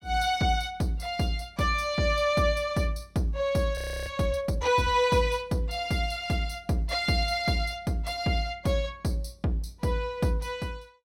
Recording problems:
audio freezing; at 4 s

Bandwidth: 16 kHz